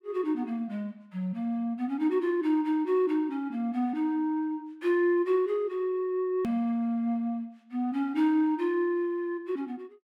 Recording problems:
hard cut with a click; at 6.5 s

